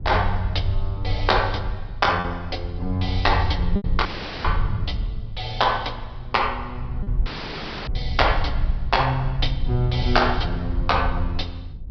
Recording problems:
treble missing; nothing above 5.5 kHz
low-frequency rumble; below 72 Hz, SNR 5 dB
packet loss; 1.5% of the sound replaced, filled with repeated pitch periods
dropout; at 4 s and at 7.5 s for 0.5 s; filled with static

